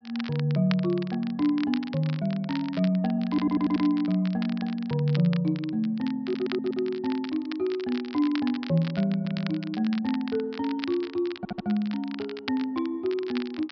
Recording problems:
treble cut off; nothing above 5.5 kHz
crackling; vinyl, SNR 15 dB
stutter; 4 times, first at 3.5 s

